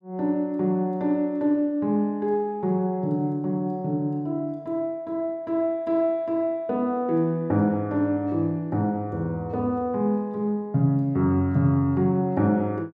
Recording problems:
none

